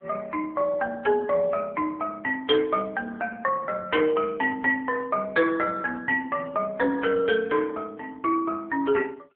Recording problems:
phone line; 280 Hz to 2.2 kHz, AMR-NB

